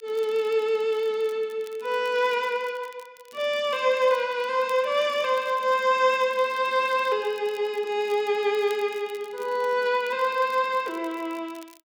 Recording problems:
crackling; vinyl, SNR 27 dB

